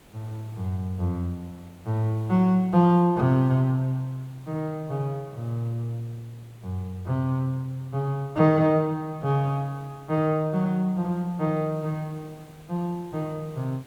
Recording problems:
hiss; slope -5 dB per octave, SNR 27 dB

